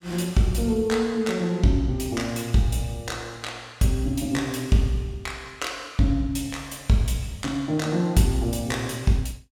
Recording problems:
none

